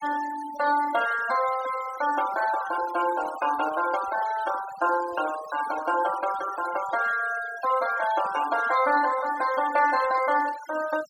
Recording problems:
noise reduction artefacts; signal-to-artefact ratio 13 dB

